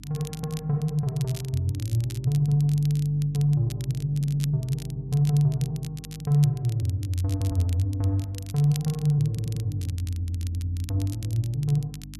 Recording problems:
mains hum; 50 Hz, harmonics up to 300 Hz, SNR 17 dB
crackling; vinyl, SNR 19 dB
stutter; at 4 s, at 9.5 s and at 10 s

